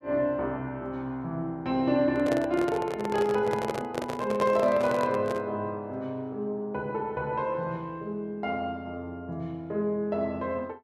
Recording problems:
microphone handling noise; from 2 to 5.5 s; peak +2 dB vs average level

